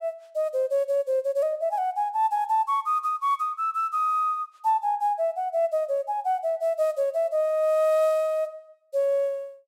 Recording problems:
none

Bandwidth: 16 kHz